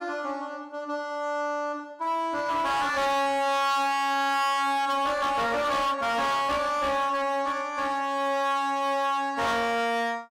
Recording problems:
distorted audio; hard clipping, signal-to-distortion ratio 8 dB

